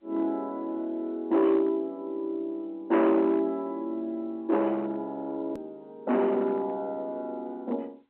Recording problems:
telephone audio; 990 Hz to 3 kHz, G.711
distortion; hard clipping, signal-to-distortion ratio 11 dB
click at an edit; at 5.5 s

